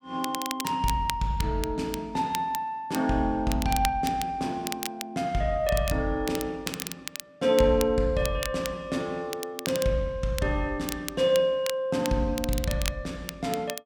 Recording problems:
crackling; vinyl, SNR 10 dB

